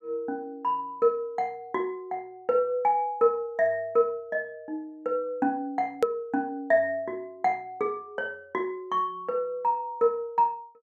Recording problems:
edit click; at 6 s

